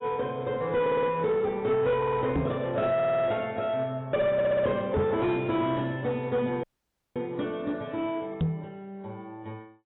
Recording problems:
lossy codec; AAC, log-spectral distance 2 dB, nothing above 3.5 kHz
distorted audio; soft clipping, signal-to-distortion ratio 11 dB
stutter; 4 times, first at 1 s
knock on the microphone; at 2.5 s, at 5 s and at 8.5 s; peak +4 dB vs average level
dropout; at 6.5 s for 0.5 s

